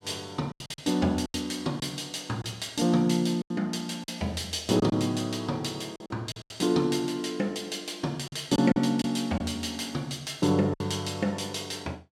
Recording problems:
lost packets; 7% of the sound replaced, filled with silence

